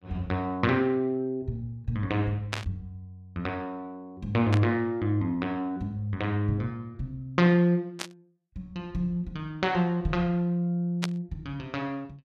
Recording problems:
static burst; 4 times, first at 2.5 s; peak +1 dB vs average level

